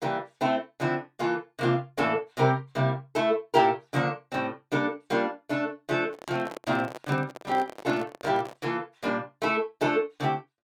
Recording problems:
handling noise; from 6 to 8.5 s; peak -5 dB vs average level

